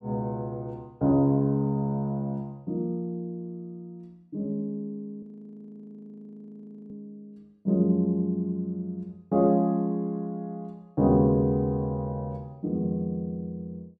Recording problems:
frozen audio; at 5 s for 1.5 s

